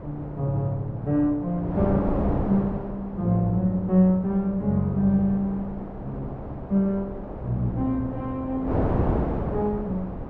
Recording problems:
wind noise; below 540 Hz, SNR 7 dB

